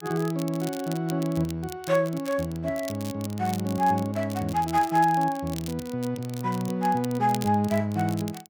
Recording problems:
crackling; vinyl, SNR 16 dB

